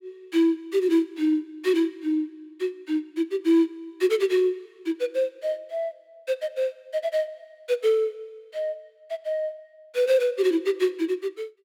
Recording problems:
none

